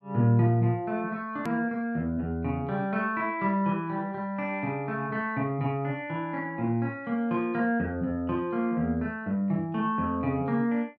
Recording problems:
edit click; at 1.5 s

